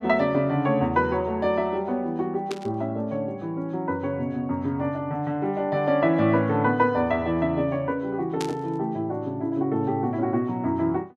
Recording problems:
static burst; at 2.5 s and at 8.5 s; peak -4 dB vs average level

